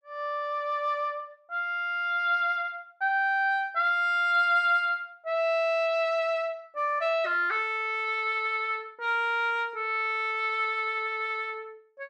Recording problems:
none

